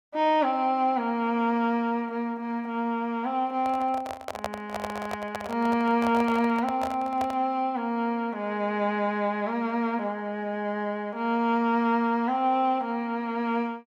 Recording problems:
microphone handling noise; from 3.5 to 7.5 s; peak 0 dB vs average level

